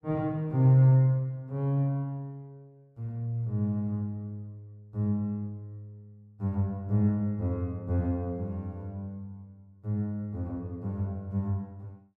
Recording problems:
none

